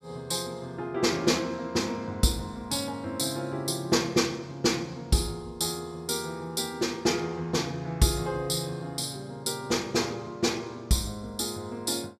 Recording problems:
none

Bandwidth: 14.5 kHz